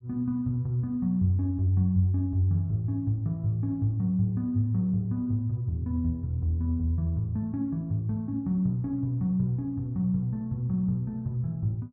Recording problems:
none

